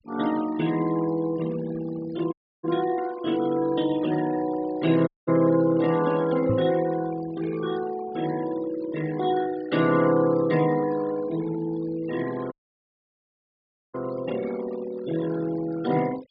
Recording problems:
treble cut off; nothing above 5.1 kHz
noise reduction artefacts; signal-to-artefact ratio 17 dB
audio cutting out; at 2.5 s, at 5 s and at 13 s for 1.5 s
microphone thump; at 6.5 s; peak +1 dB vs average level

